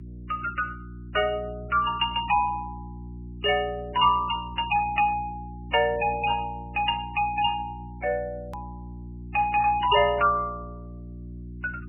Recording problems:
lossy codec; MP3, log-spectral distance 3 dB, nothing above 2.5 kHz
electrical hum; 60 Hz, harmonics up to 360 Hz, SNR 15 dB
hard cut with a click; at 8.5 s

